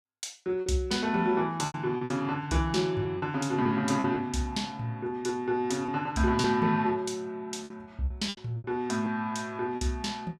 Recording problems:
packet loss; 7% of the sound replaced, filled with repeated pitch periods

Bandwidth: 14.5 kHz